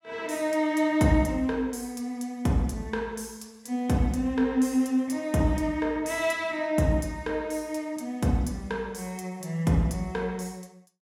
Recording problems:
none

